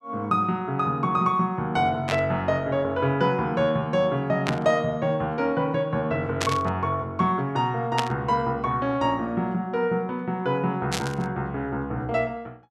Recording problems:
static burst; 5 times, first at 2 s; peak +3 dB vs average level

